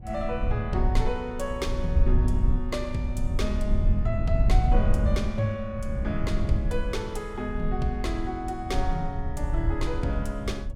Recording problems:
low-frequency rumble; below 76 Hz, SNR -2 dB

